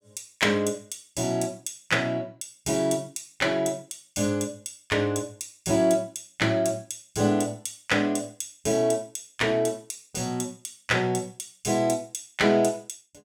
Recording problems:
none

